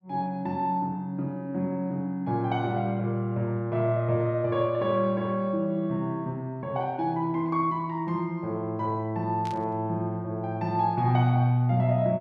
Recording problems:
burst of static; at 9.5 s; peak -12 dB vs average level

